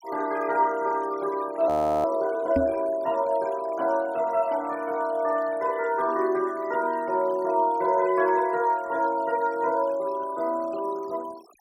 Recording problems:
noise reduction artefacts; signal-to-artefact ratio 24 dB
audio freezing; at 1.5 s
microphone thump; at 2.5 s; peak +3 dB vs average level

